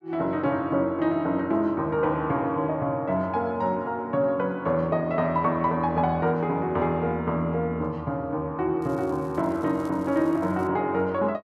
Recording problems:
crackling; from 9 to 11 s; loose cable, SNR 30 dB

